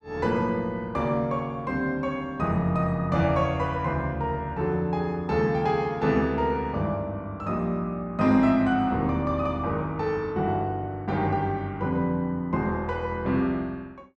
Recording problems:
none

